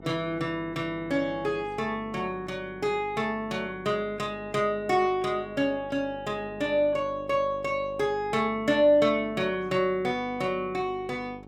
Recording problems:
electrical hum; 50 Hz, harmonics up to 1.3 kHz, SNR 18 dB

